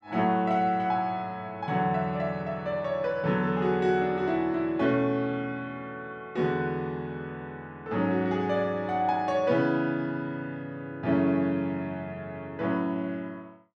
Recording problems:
none

